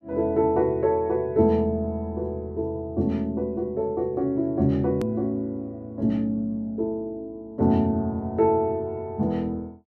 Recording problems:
hard cut with a click; at 5 s

